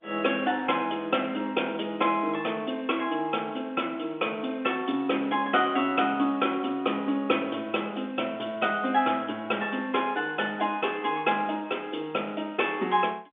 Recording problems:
phone line; 170 Hz to 3.6 kHz, G.711

